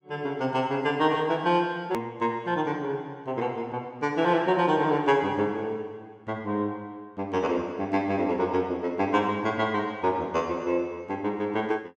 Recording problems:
hard cut with a click; at 2 s

